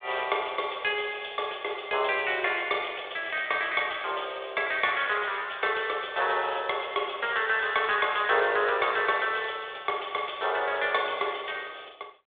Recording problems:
phone line; 340 Hz to 3.6 kHz, G.726

